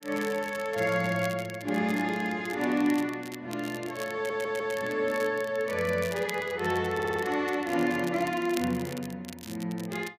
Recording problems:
crackling; vinyl, SNR 16 dB
stutter; at 4 s and at 7 s

